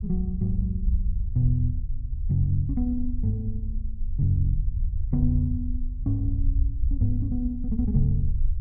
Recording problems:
rumble; below 66 Hz, SNR 2 dB

